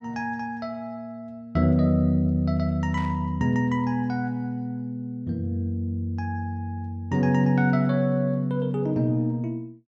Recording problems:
static burst; at 3 s; peak -15 dB vs average level

